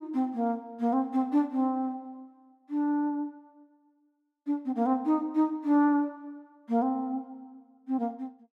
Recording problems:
none

